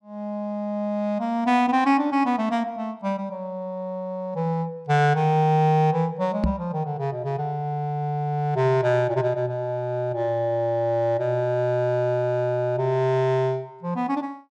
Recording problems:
microphone bump; at 6.5 s; peak +4 dB vs average level

